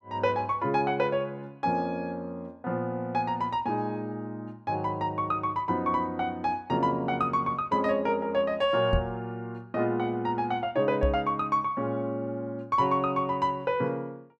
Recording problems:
microphone thump; at 9 s and at 11 s; peak +4 dB vs average level

